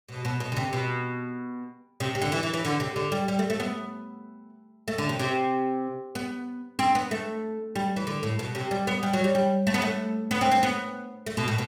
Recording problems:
none

